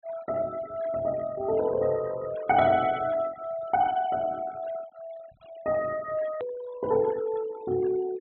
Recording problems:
low-pass filter; nothing above 3.9 kHz
noise reduction artefacts; signal-to-artefact ratio 18 dB
edit click; at 6.5 s

